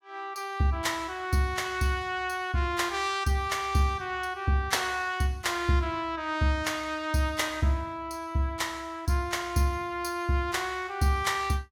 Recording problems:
none

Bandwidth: 18 kHz